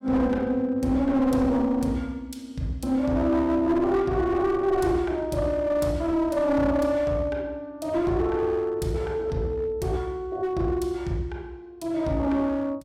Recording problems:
distortion; hard clipping, uneven, signal-to-distortion ratio 10 dB

